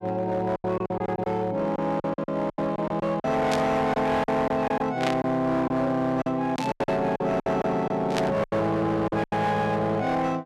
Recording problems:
distortion; hard clipping, signal-to-distortion ratio 11 dB
lost packets; 12% of the sound replaced, filled with silence
burst of static; 4 times, first at 3.5 s; peak 0 dB vs average level

